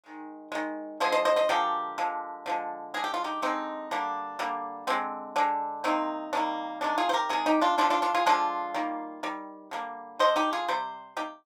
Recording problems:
none

